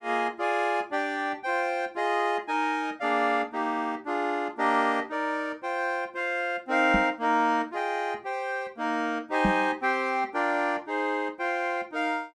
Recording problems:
microphone thump; at 7 s and at 9.5 s; peak +4 dB vs average level

